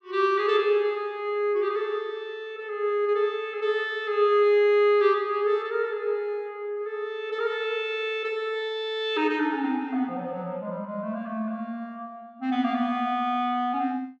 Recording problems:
none

